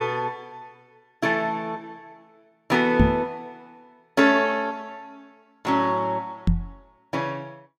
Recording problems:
microphone thump; at 3 s and at 6.5 s; peak +10 dB vs average level

